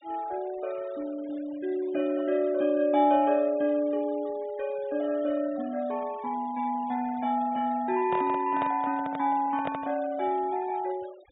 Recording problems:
low-pass filter; nothing above 4 kHz
noise reduction artefacts; signal-to-artefact ratio 23 dB
microphone handling noise; from 8 to 10 s; peak -2 dB vs average level

